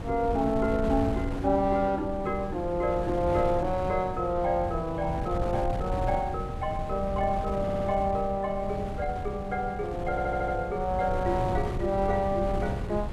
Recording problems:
wind noise; below 210 Hz, SNR 7 dB
audio stuttering; at 7.5 s and at 10 s

